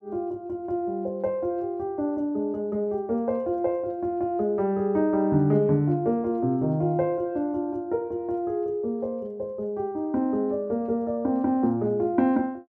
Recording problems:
none

